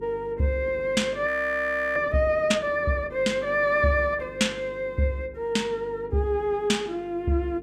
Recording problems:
electrical hum; 50 Hz, harmonics up to 450 Hz, SNR 19 dB
audio freezing; at 1.5 s for 0.5 s

